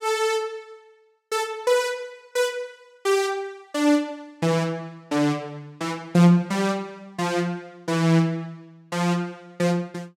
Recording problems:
none

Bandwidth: 16 kHz